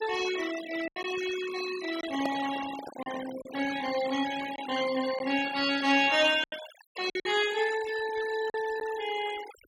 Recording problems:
denoising artefacts; signal-to-artefact ratio 12 dB
lost packets; 5% of the sound replaced, filled with silence
handling noise; from 2 to 3.5 s; peak 0 dB vs average level

